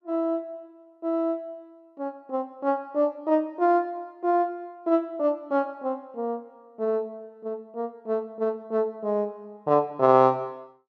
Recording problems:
none

